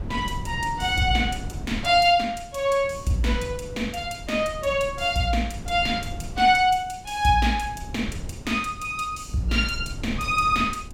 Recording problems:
wind noise; below 170 Hz, SNR 14 dB

